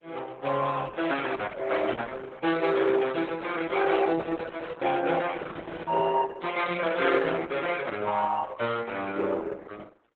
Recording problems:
lossy compression; Opus, then Opus, log-spectral distance 4 dB

